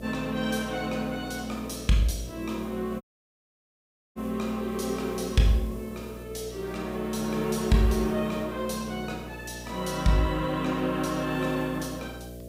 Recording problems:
electrical hum; 60 Hz, harmonics up to 660 Hz, SNR 13 dB
background hiss; slope +3 dB per octave, SNR 25 dB
audio cutting out; at 3 s for 1 s

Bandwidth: 15.5 kHz